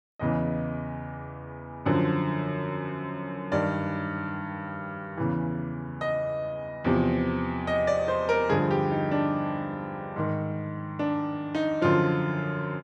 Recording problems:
none

